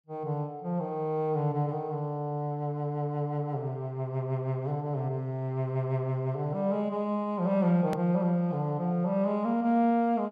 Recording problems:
click at an edit; at 8 s

